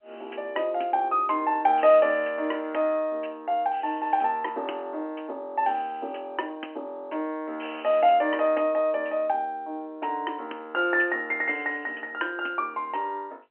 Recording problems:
telephone audio; 260 Hz to 3.1 kHz, G.711

